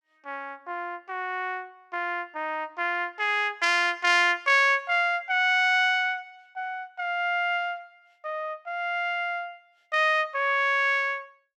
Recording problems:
none

